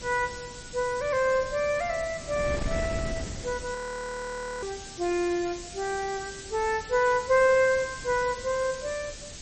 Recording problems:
codec artefacts; MP3, log-spectral distance 15 dB
background hiss; slope +4 dB per octave, SNR 14 dB
wind on the microphone; below 290 Hz, SNR 14 dB
audio freezing; at 4 s for 1 s

